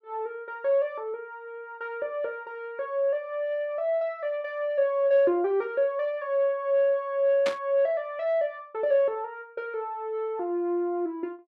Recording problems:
static burst; at 7.5 s; peak -1 dB vs average level

